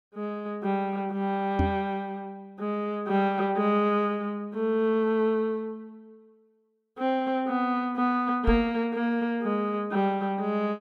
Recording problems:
microphone bump; at 1.5 s and at 8.5 s; peak +4 dB vs average level

